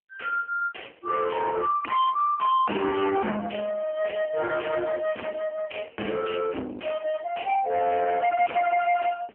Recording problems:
telephone audio; 240 Hz to 2.7 kHz, AMR-NB
distortion; soft clipping, signal-to-distortion ratio 5 dB

